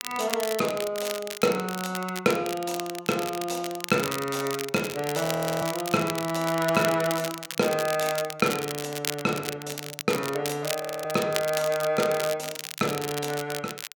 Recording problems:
crackling; vinyl, SNR 7 dB
frozen audio; at 5.5 s and at 11 s

